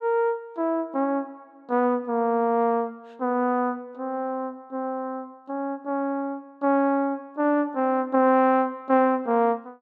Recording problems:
none

